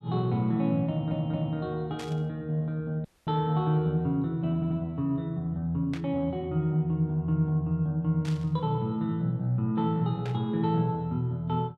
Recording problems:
audio stuttering; at 1 s and at 4.5 s
burst of static; 4 times, first at 2 s; peak -10 dB vs average level
audio cutting out; at 3 s

